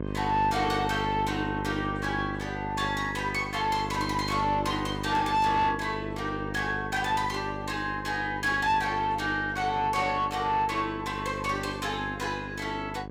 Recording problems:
distortion; soft clipping, signal-to-distortion ratio 10 dB
hum; 50 Hz, harmonics up to 1.6 kHz, SNR 8 dB

